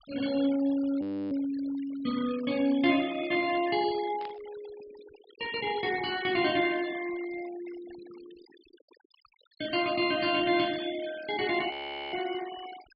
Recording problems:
low-pass filter; nothing above 5.5 kHz
noise reduction artefacts; signal-to-artefact ratio 17 dB
frozen audio; at 1 s and at 12 s
static burst; at 3 s and at 4 s; peak -12 dB vs average level

